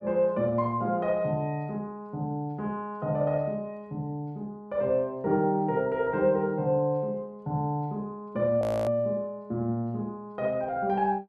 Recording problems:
audio freezing; at 8.5 s

